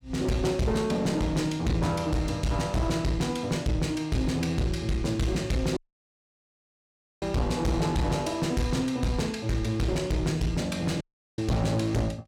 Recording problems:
distortion; hard clipping, uneven, signal-to-distortion ratio 6 dB
audio cutting out; at 6 s for 1.5 s and at 11 s

